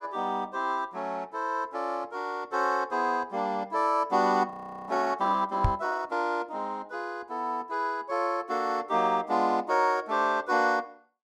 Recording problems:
audio freezing; at 4.5 s
microphone bump; at 5.5 s; peak +5 dB vs average level

